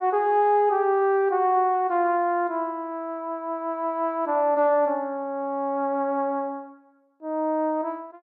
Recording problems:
none

